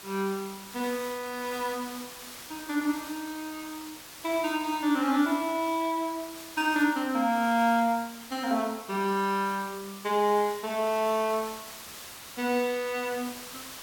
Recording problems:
hiss; slope 0 dB per octave, SNR 14 dB

